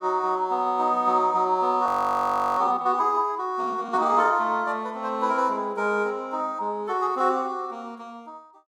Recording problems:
audio freezing; at 2 s for 0.5 s

